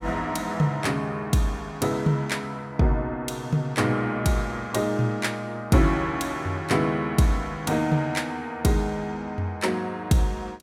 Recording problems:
none

